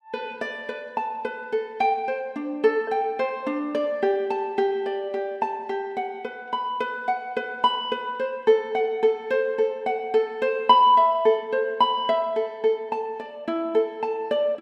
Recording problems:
none

